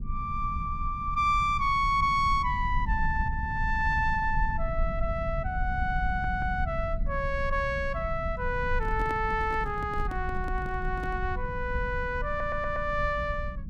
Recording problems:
low-frequency rumble; below 78 Hz, SNR 6 dB
audio stuttering; at 6 s and at 12 s
handling noise; from 9 to 11 s; peak -6 dB vs average level

